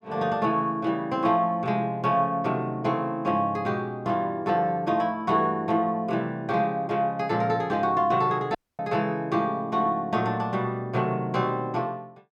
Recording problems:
audio cutting out; at 8.5 s

